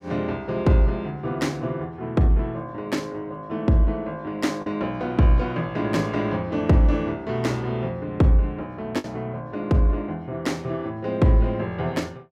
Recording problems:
packet loss; 0.8% of the sound replaced, filled with the last packet

